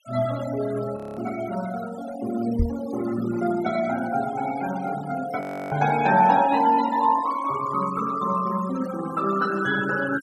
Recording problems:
noise reduction artefacts; signal-to-artefact ratio 15 dB
audio freezing; at 1 s and at 5.5 s
microphone bump; at 2.5 s; peak +4 dB vs average level

